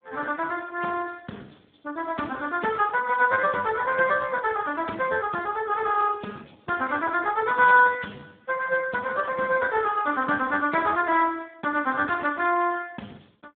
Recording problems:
phone line; 190 Hz to 2.9 kHz, Speex

